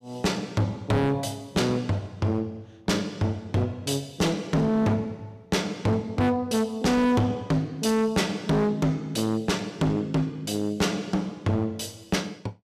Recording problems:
distorted audio; hard clipping, signal-to-distortion ratio 6 dB

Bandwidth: 14.5 kHz